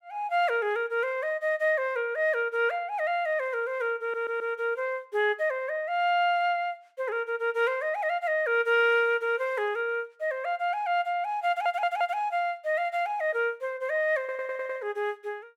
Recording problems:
audio stuttering; at 4 s, at 11 s and at 14 s

